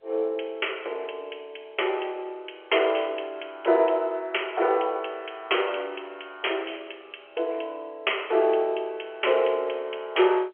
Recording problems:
phone line; 320 Hz to 3.3 kHz, G.711

